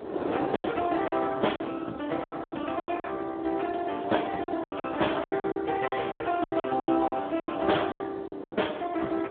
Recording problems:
telephone audio; 240 Hz to 3.4 kHz, Speex
wind on the microphone; below 700 Hz, SNR 11 dB
lost packets; 16% of the sound replaced, filled with silence

